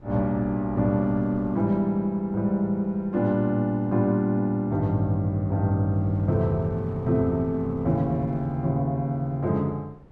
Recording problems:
wind noise; below 340 Hz, SNR 22 dB

